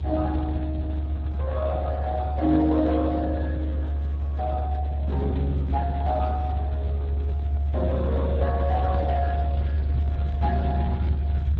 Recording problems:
codec artefacts; Speex, log-spectral distance 2 dB
low-frequency rumble; below 74 Hz, strongest tone 72 Hz, SNR -1 dB

